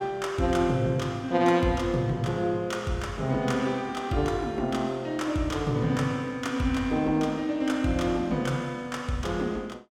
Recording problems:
none

